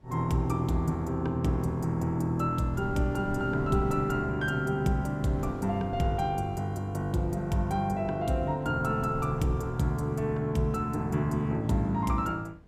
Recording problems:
wind noise; below 180 Hz, SNR 18 dB

